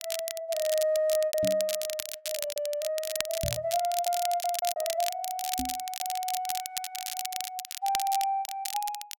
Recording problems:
crackle; vinyl, SNR 4 dB
lost packets; 9% of the sound replaced, filled with repeated pitch periods
microphone thump; at 1.5 s, at 3.5 s and at 5.5 s; peak -1 dB vs average level

